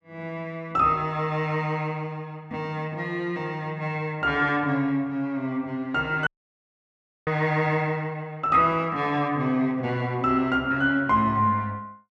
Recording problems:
dropout; at 6.5 s for 1 s

